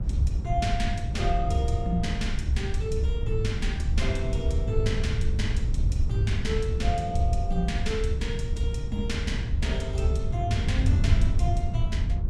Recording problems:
wind on the microphone; below 96 Hz, SNR -2 dB

